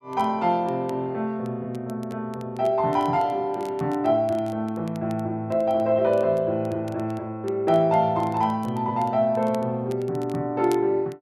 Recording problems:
crackling; vinyl, SNR 27 dB

